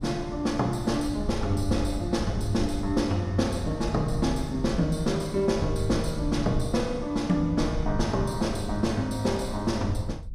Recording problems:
wind on the microphone; below 86 Hz, SNR 9 dB

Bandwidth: 15 kHz